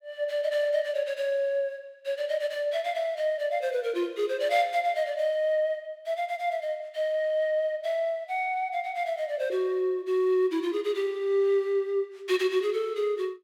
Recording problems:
none

